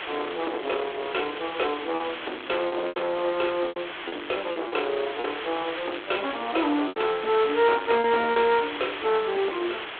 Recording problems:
telephone audio; 300 Hz to 3.6 kHz, G.726
distortion; soft clipping, signal-to-distortion ratio 11 dB
background hiss; SNR 8 dB
lost packets; 6% of the sound replaced, filled with repeated pitch periods

